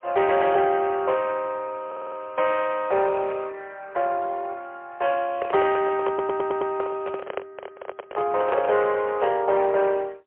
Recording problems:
telephone audio; 340 Hz to 2.8 kHz, AMR-NB, then MP3
stutter; at 2 s and at 6 s
microphone handling noise; from 5.5 to 9 s; peak -1 dB vs average level

